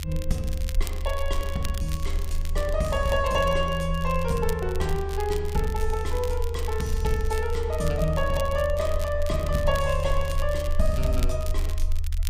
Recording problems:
low-frequency rumble; below 76 Hz, strongest tone 18 Hz, SNR 3 dB
crackling; vinyl, SNR 15 dB

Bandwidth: 15.5 kHz